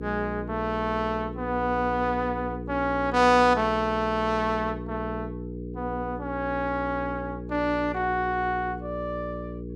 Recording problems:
mains hum; 60 Hz, harmonics up to 480 Hz, SNR 9 dB

